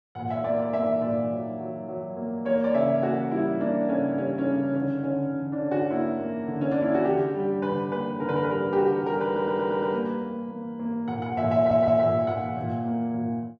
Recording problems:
stutter; at 9.5 s and at 12 s

